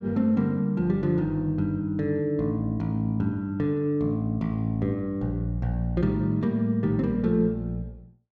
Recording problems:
none

